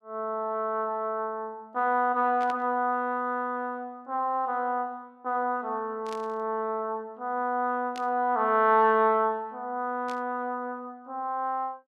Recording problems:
burst of static; 4 times, first at 2.5 s; peak -10 dB vs average level

